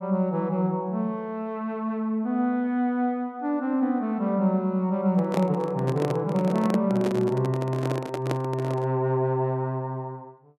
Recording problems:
handling noise; from 5 to 9 s; peak +1 dB vs average level

